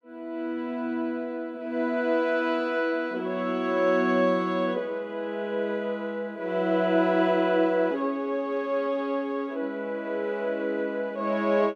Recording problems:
none

